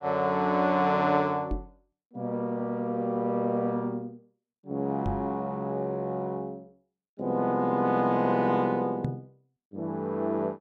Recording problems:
microphone bump; at 1.5 s, at 5 s and at 9 s; peak +1 dB vs average level

